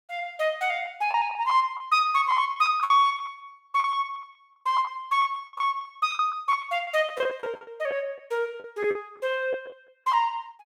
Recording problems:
lost packets; 10% of the sound replaced, filled with the last packet

